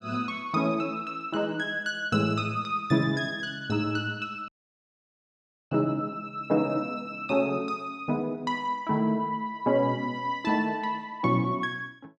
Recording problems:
dropout; at 4.5 s for 1 s

